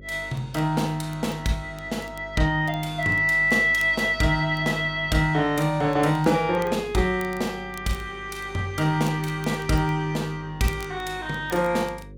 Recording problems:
electrical hum; 50 Hz, harmonics up to 550 Hz, SNR 20 dB
crackle; vinyl, SNR 26 dB

